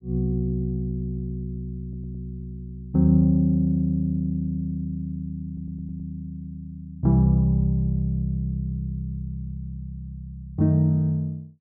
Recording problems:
audio stuttering; at 2 s and at 5.5 s

